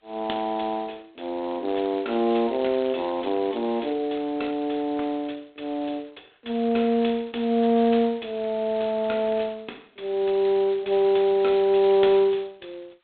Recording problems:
telephone audio; 300 Hz to 3.8 kHz, G.726

